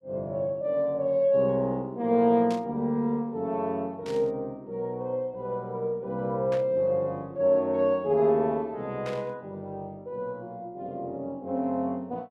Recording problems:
static burst; 4 times, first at 2.5 s; peak -10 dB vs average level

